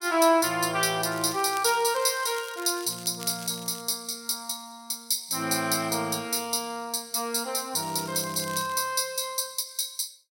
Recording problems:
crackling; from 1 to 4 s and at 8 s; loose cable, SNR 17 dB

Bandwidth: 16.5 kHz